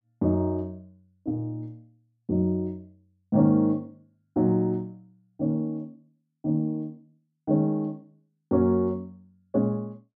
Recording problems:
none

